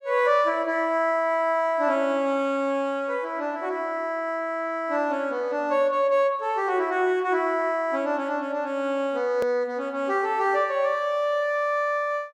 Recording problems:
edit click; at 9.5 s

